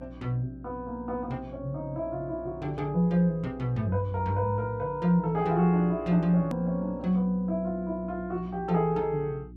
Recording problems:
electrical hum; 60 Hz, harmonics up to 360 Hz, SNR 18 dB
click at an edit; at 6.5 s

